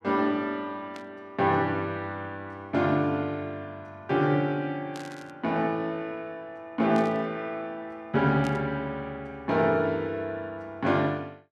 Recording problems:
static burst; 4 times, first at 1 s; peak -10 dB vs average level

